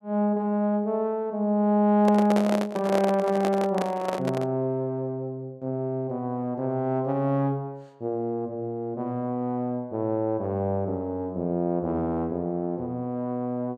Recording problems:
handling noise; from 2 to 4.5 s; peak +1 dB vs average level

